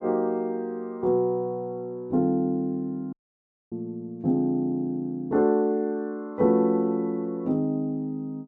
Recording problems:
dropout; at 3 s for 0.5 s

